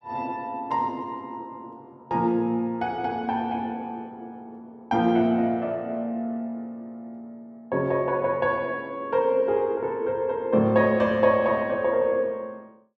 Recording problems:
none

